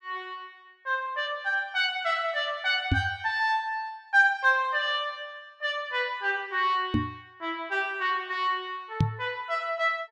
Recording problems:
knock on the microphone; at 3 s, at 7 s and at 9 s; peak +6 dB vs average level

